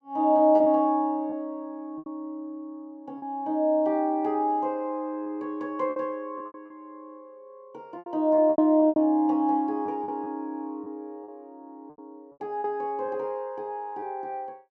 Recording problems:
lost packets; 7% of the sound replaced, filled with repeated pitch periods

